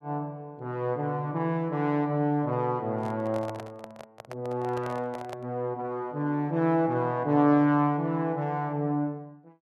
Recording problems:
microphone handling noise; from 3 to 5.5 s; peak -7 dB vs average level

